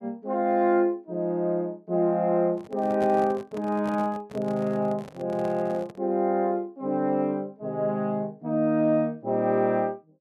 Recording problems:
handling noise; from 2.5 to 6 s; peak -8 dB vs average level

